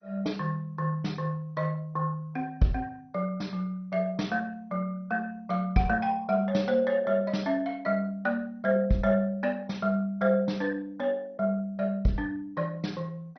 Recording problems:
lossy codec; MP2, log-spectral distance 2 dB, nothing above 5.8 kHz

